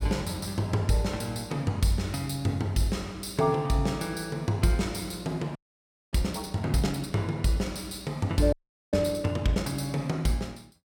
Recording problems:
frozen audio; at 5.5 s for 0.5 s and at 8.5 s

